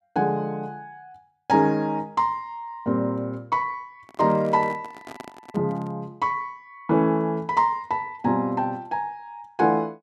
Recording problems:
microphone handling noise; from 4 to 6 s; peak -9 dB vs average level

